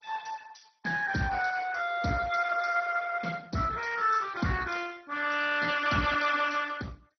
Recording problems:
lossy codec; Speex, then MP2, log-spectral distance 6 dB, nothing above 6 kHz

